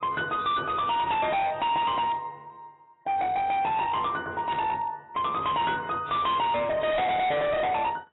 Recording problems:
codec artefacts; AAC, then AAC, log-spectral distance 3 dB, nothing above 3.8 kHz
distorted audio; hard clipping, signal-to-distortion ratio 8 dB
static burst; at 2 s, at 4.5 s and at 7 s; peak -13 dB vs average level

